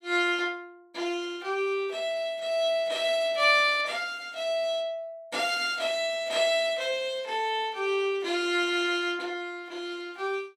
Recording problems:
none

